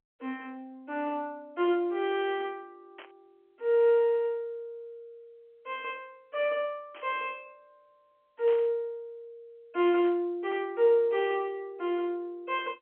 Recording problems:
phone line; 260 Hz to 3.5 kHz, G.711
burst of static; 4 times, first at 3 s; peak -13 dB vs average level

